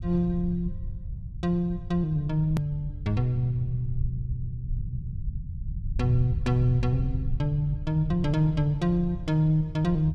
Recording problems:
low-frequency rumble; below 110 Hz, SNR 8 dB
click at an edit; at 2.5 s

